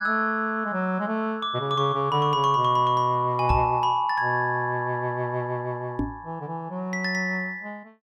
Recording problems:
microphone bump; at 3.5 s and at 6 s; peak +3 dB vs average level

